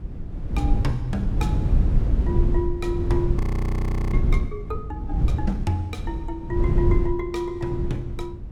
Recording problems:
wind noise; below 100 Hz, SNR -4 dB
audio freezing; at 3.5 s for 0.5 s

